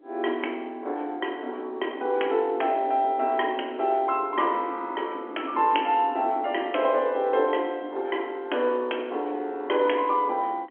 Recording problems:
phone line; 260 Hz to 3.4 kHz, G.711
wind on the microphone; below 400 Hz, SNR 18 dB

